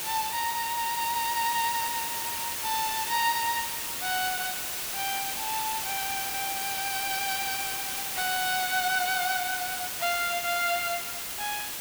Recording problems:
hiss; slope 0 dB per octave, SNR 1 dB

